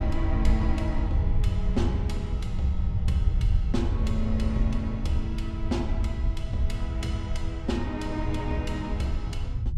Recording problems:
rumble; below 88 Hz, SNR -2 dB

